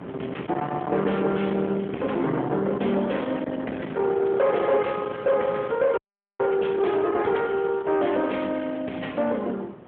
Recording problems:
phone line; 150 Hz to 3.4 kHz, AMR-NB
distorted audio; soft clipping, signal-to-distortion ratio 9 dB
wind on the microphone; below 750 Hz, SNR 11 dB
frozen audio; at 6 s

